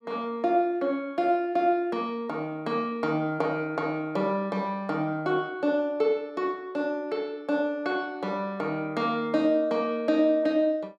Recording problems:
none

